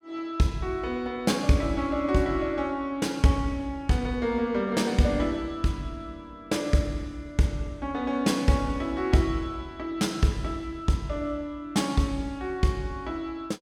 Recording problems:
none

